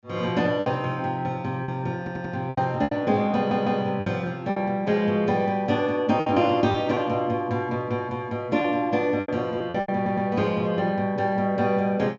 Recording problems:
low-pass filter; nothing above 7.4 kHz
lost packets; 7% of the sound replaced, filled with repeated pitch periods
stutter; at 2 s, at 3.5 s and at 10 s

